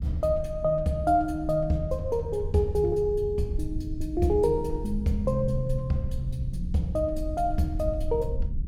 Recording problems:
low-frequency rumble; below 74 Hz, SNR 9 dB

